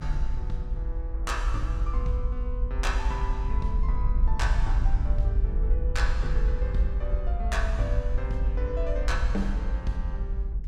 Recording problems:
rumble; below 56 Hz, SNR -6 dB

